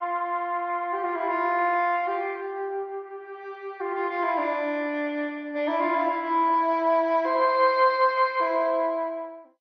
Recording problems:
lossy compression; MP2, log-spectral distance 2 dB

